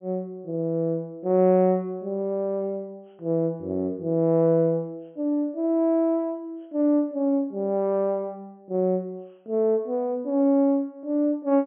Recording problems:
low-pass filter; nothing above 3.3 kHz

